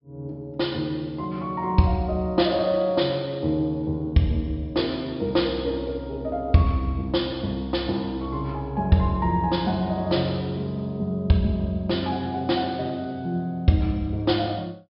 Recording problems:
treble missing; nothing above 5.3 kHz

